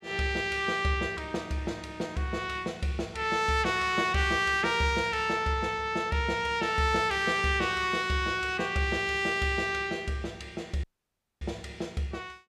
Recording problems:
dropout; at 11 s for 0.5 s

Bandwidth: 15.5 kHz